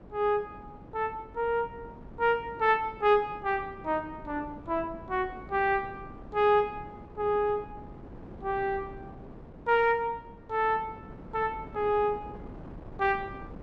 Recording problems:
wind noise; below 400 Hz, SNR 18 dB

